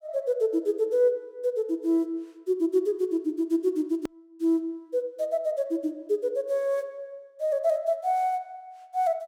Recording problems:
click at an edit; at 4 s

